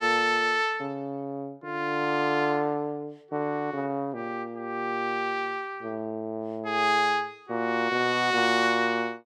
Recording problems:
none

